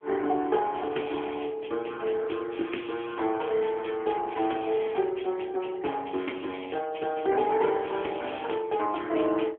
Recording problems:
telephone audio; 240 Hz to 3.3 kHz, AMR-NB

